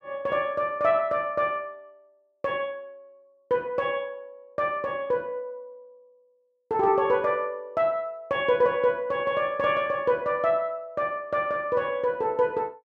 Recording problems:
none

